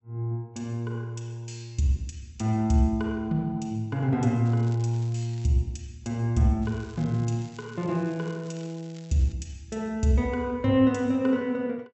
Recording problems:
low-pass filter; nothing above 7.9 kHz
crackling; from 4.5 to 5.5 s and from 6.5 to 9.5 s; loose cable, SNR 26 dB

